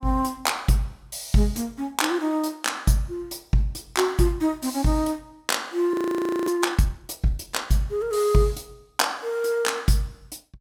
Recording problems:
frozen audio; at 6 s for 0.5 s

